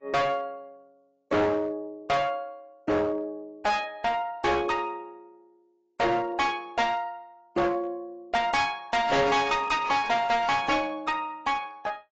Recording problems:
lossy compression; AAC, log-spectral distance 2 dB, nothing above 7.6 kHz
distortion; hard clipping, uneven, signal-to-distortion ratio 7 dB

